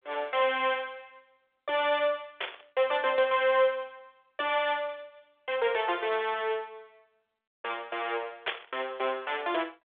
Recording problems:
telephone audio; 340 Hz to 3.6 kHz, G.726
burst of static; at 2.5 s and at 8.5 s; peak +3 dB vs average level

